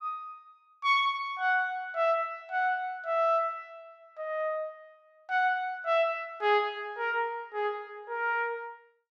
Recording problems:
none

